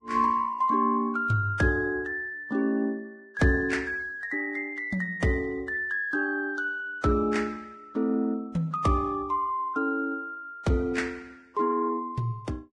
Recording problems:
lossy codec; Vorbis, log-spectral distance 2 dB, nothing above 10.1 kHz

